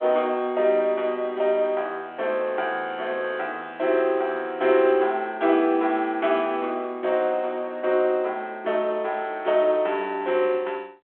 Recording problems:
phone line; 340 Hz to 3.5 kHz, G.726

